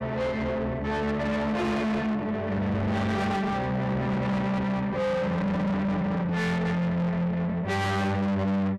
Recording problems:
distortion; soft clipping, signal-to-distortion ratio 6 dB

